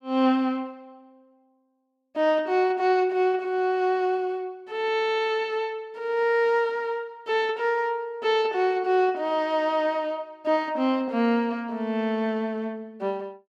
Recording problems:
none

